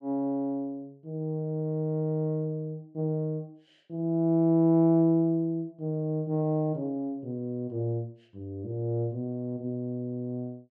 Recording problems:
none

